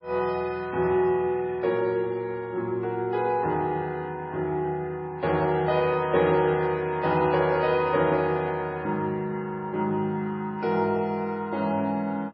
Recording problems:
lossy compression; MP3, log-spectral distance 2 dB, nothing above 4.6 kHz

